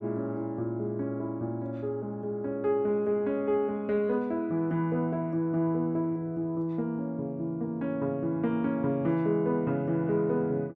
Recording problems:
none

